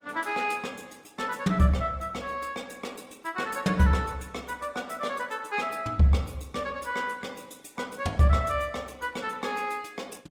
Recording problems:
codec artefacts; Opus, log-spectral distance 4 dB, nothing above 19 kHz

